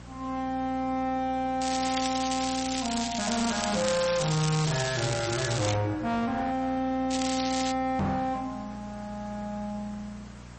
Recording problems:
lossy compression; MP3, log-spectral distance 8 dB, nothing above 8.2 kHz
distorted audio; hard clipping, uneven, signal-to-distortion ratio 7 dB
hum; 60 Hz, harmonics up to 540 Hz, SNR 18 dB
hiss; slope -4 dB per octave, SNR 22 dB
crackle; from 1.5 to 6 s and at 7 s; loose cable, SNR 4 dB
microphone thump; at 8 s; peak +5 dB vs average level

